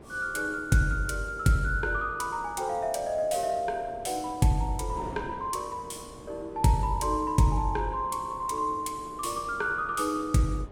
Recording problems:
wind noise; below 520 Hz, SNR 18 dB

